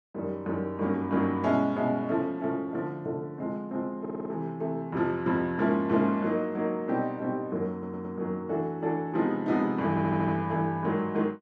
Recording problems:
audio stuttering; at 4 s, at 7.5 s and at 10 s

